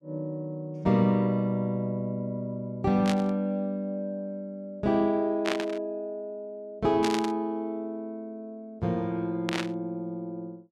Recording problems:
burst of static; 4 times, first at 3 s; peak +2 dB vs average level

